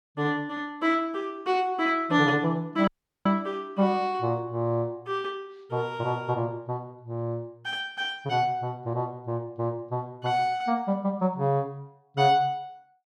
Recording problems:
dropout; at 3 s

